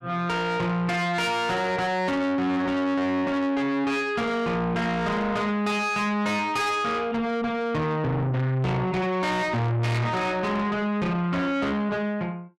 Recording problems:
distortion; soft clipping, signal-to-distortion ratio 7 dB

